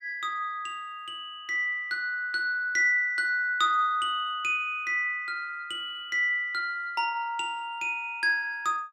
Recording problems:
none

